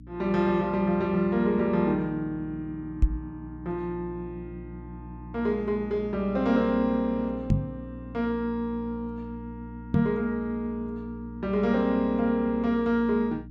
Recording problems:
electrical hum; 60 Hz, harmonics up to 300 Hz, SNR 15 dB
knock on the microphone; at 3 s, at 7.5 s and at 10 s; peak +9 dB vs average level

